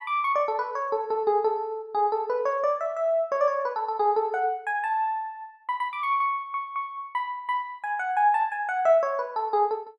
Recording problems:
audio stuttering; at 6.5 s

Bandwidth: 12.5 kHz